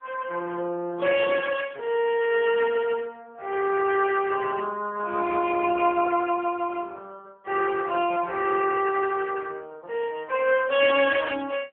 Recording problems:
phone line; 260 Hz to 3.3 kHz, AMR-NB

